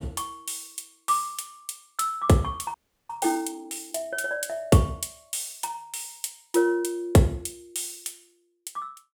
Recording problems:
audio freezing; at 2.5 s

